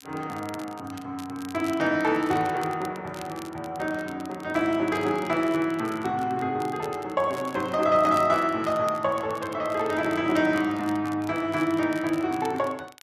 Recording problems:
crackle; vinyl, SNR 21 dB

